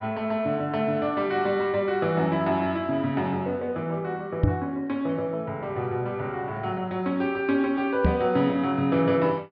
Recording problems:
low-pass filter; nothing above 5.5 kHz
microphone thump; at 4.5 s and at 8 s; peak +8 dB vs average level

